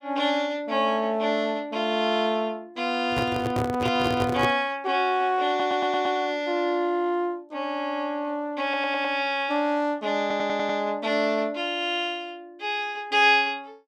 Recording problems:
microphone handling noise; from 3 to 4.5 s; peak +1 dB vs average level
audio stuttering; at 5.5 s, at 8.5 s and at 10 s

